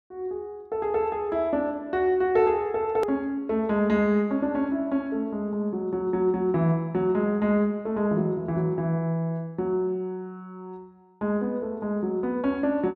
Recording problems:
hard cut with a click; at 3 s

